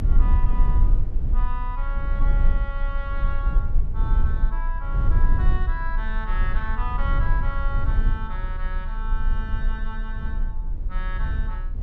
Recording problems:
low-frequency rumble; below 48 Hz, strongest tone 28 Hz, SNR -9 dB

